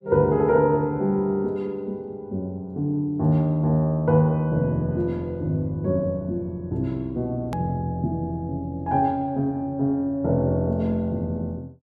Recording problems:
edit click; at 7.5 s

